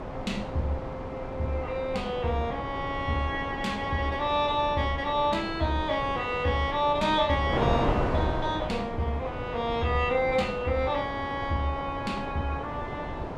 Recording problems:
wind on the microphone; below 800 Hz, SNR 6 dB

